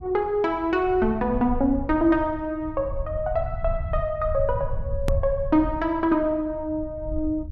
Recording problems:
low-frequency rumble; below 84 Hz, SNR 9 dB
edit click; at 5 s

